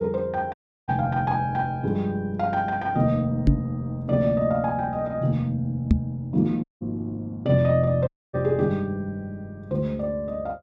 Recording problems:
audio cutting out; at 0.5 s, at 6.5 s and at 8 s
microphone bump; at 3.5 s and at 6 s; peak +10 dB vs average level

